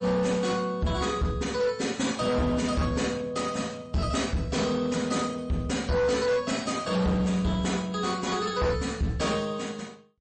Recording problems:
lossy compression; MP3, log-spectral distance 4 dB, nothing above 8.2 kHz
distortion; hard clipping, signal-to-distortion ratio 10 dB

